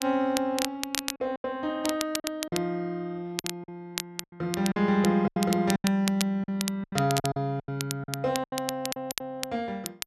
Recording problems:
crackling; vinyl, SNR 6 dB
lost packets; 11% of the sound replaced, filled with silence

